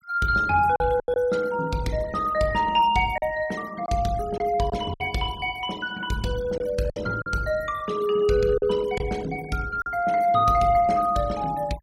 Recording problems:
denoising artefacts; signal-to-artefact ratio 20 dB
packet loss; 4% of the sound replaced, filled with silence

